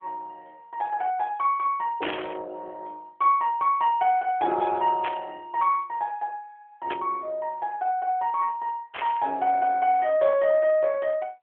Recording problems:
telephone audio; 320 Hz to 3.4 kHz, AMR-NB
burst of static; 4 times, first at 2 s; peak -2 dB vs average level

